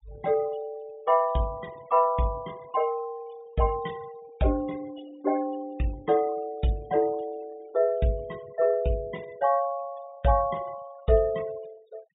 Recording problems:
treble cut off; nothing above 4 kHz
noise reduction artefacts; signal-to-artefact ratio 23 dB

